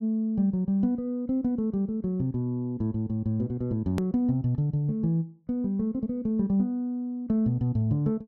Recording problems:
edit click; at 4 s

